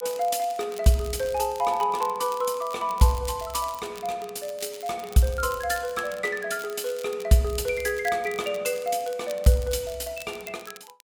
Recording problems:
crackle; vinyl, SNR 18 dB

